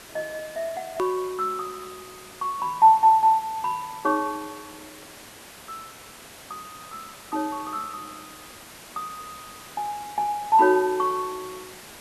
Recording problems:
hiss; slope -2 dB per octave, SNR 19 dB
click at an edit; at 1 s

